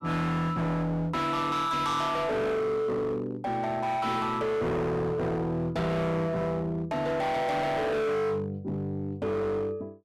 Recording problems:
distorted audio; hard clipping, signal-to-distortion ratio 7 dB

